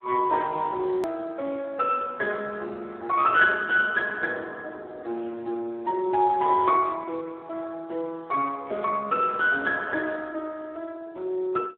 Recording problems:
telephone audio; 240 Hz to 3 kHz, Speex
click at an edit; at 1 s

